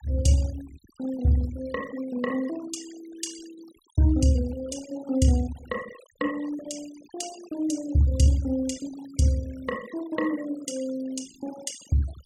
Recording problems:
noise reduction artefacts; signal-to-artefact ratio 20 dB

